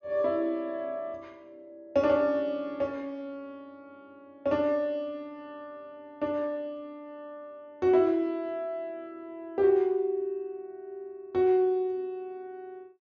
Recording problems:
low-pass filter; nothing above 7.1 kHz

